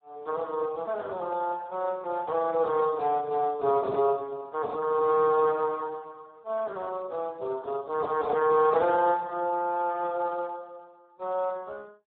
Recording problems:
phone line; 240 Hz to 2.1 kHz, Speex

